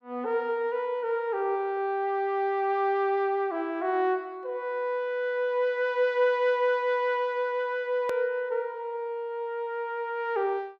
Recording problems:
edit click; at 8 s

